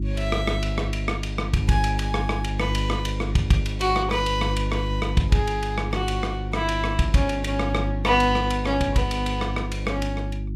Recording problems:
electrical hum; 50 Hz, harmonics up to 350 Hz, SNR 4 dB

